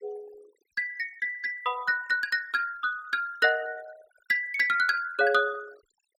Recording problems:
denoising artefacts; signal-to-artefact ratio 22 dB

